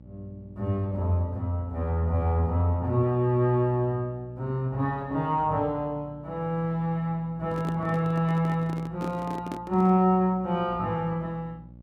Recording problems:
hum; 60 Hz, harmonics up to 600 Hz, SNR 21 dB
handling noise; from 7.5 to 10 s; peak -4 dB vs average level

